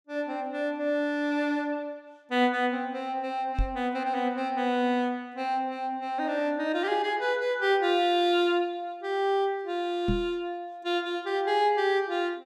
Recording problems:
microphone bump; at 3.5 s and at 10 s; peak +3 dB vs average level

